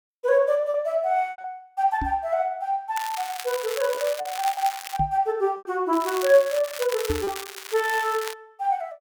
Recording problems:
packet loss; 4% of the sound replaced, filled with repeated pitch periods
microphone bump; at 2 s, at 5 s and at 7 s; peak -1 dB vs average level
crackle; from 3 to 5 s and from 6 to 8.5 s; loose cable, SNR 11 dB

